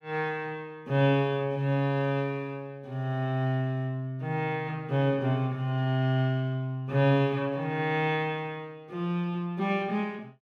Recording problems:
none

